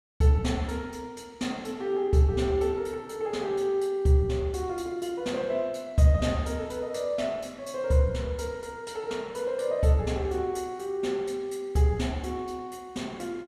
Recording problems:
none

